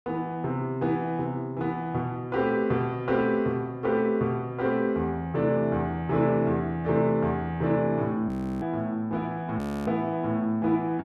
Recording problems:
audio freezing; at 8.5 s and at 9.5 s

